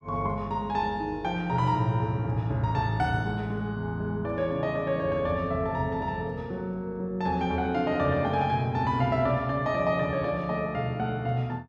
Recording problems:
none

